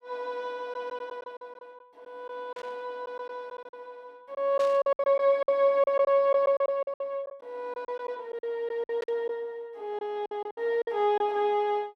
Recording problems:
lost packets; 11% of the sound replaced, filled with silence
static burst; at 2.5 s, at 4.5 s and at 9 s; peak -11 dB vs average level

